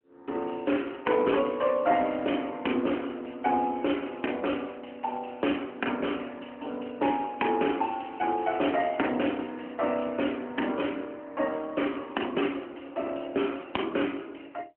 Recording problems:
phone line; 220 Hz to 3.2 kHz, AMR-NB

